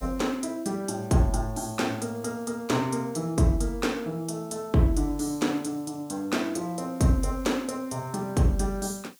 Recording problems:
background hiss; slope +4 dB per octave, SNR 26 dB

